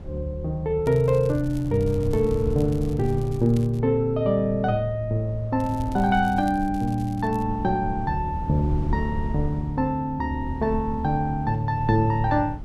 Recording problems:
wind on the microphone; below 110 Hz, SNR 11 dB
crackle; from 1 to 4 s and from 5.5 to 7.5 s; loose cable, SNR 26 dB

